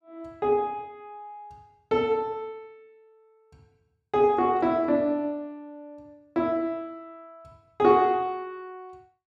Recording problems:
none

